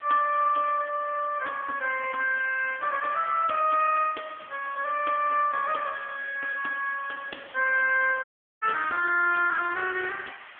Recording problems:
telephone audio; 300 Hz to 3 kHz, AMR-NB
background hiss; SNR 21 dB
audio cutting out; at 8 s

